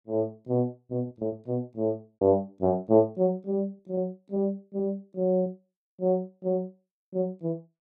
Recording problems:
packet loss; 4% of the sound replaced, filled with repeated pitch periods

